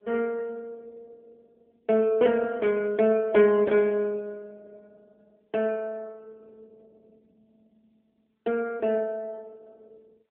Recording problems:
telephone audio; 260 Hz to 3.4 kHz, AMR-NB

